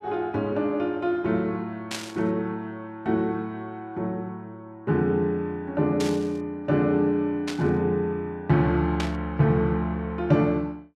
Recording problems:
burst of static; 4 times, first at 2 s; peak -2 dB vs average level

